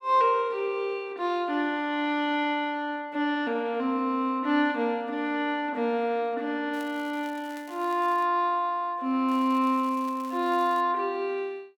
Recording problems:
crackle; from 6.5 to 8.5 s and from 9.5 to 11 s; loose cable, SNR 24 dB

